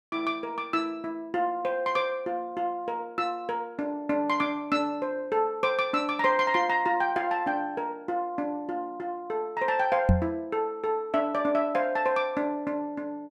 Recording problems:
knock on the microphone; at 10 s; peak +9 dB vs average level

